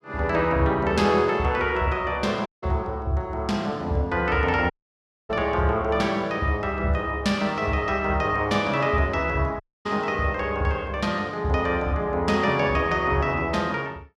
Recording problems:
audio cutting out; at 2.5 s, at 4.5 s for 0.5 s and at 9.5 s

